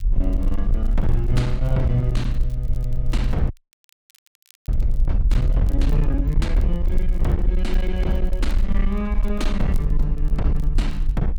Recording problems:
distorted audio; hard clipping, uneven, signal-to-distortion ratio 10 dB
rumble; below 48 Hz, SNR -2 dB
crackling; vinyl, SNR 28 dB
frozen audio; at 3.5 s for 1 s

